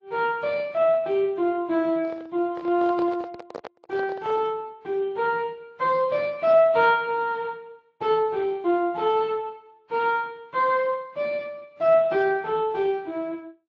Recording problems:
lossy compression; Speex, then AAC, log-spectral distance 2 dB
handling noise; from 2 to 4.5 s; peak -7 dB vs average level

